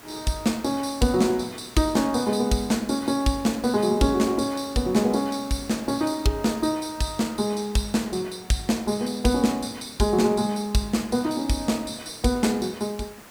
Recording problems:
background hiss; slope -3 dB per octave, SNR 21 dB

